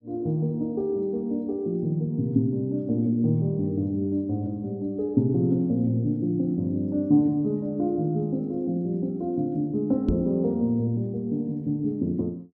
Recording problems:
microphone bump; at 10 s; peak 0 dB vs average level

